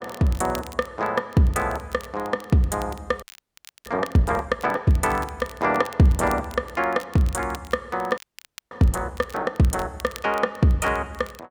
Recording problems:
crackling; vinyl, SNR 21 dB
frozen audio; at 3 s for 0.5 s and at 8 s for 0.5 s

